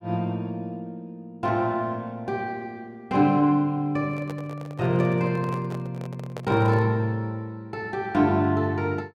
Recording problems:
handling noise; from 4 to 7 s; peak -6 dB vs average level

